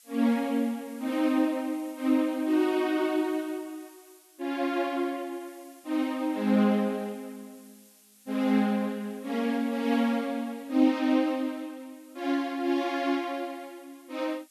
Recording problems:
hiss; slope +4 dB per octave, SNR 27 dB

